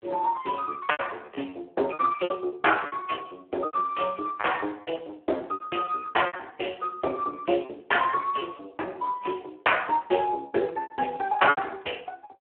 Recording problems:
telephone audio; 280 Hz to 3.2 kHz, Speex
lost packets; 10% of the sound replaced, filled with repeated pitch periods

